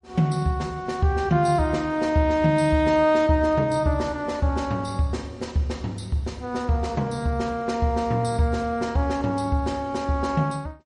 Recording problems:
lossy compression; MP3, log-spectral distance 2 dB, nothing above 9.8 kHz

